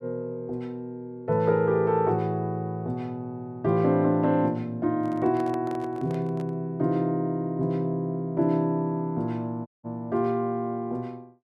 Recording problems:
microphone handling noise; from 5 to 6.5 s; peak -9 dB vs average level
audio cutting out; at 9.5 s

